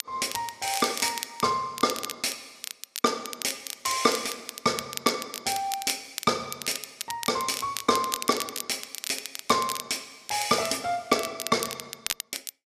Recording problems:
crackling; vinyl, SNR 7 dB

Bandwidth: 14 kHz